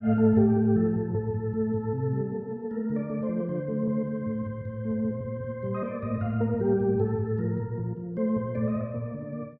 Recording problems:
none

